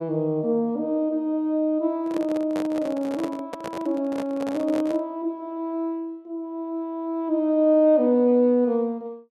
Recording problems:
handling noise; from 2 to 5 s; peak -5 dB vs average level

